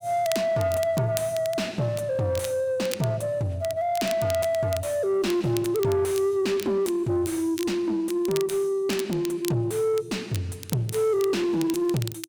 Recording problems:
distortion; soft clipping, signal-to-distortion ratio 11 dB
crackling; vinyl, SNR 14 dB

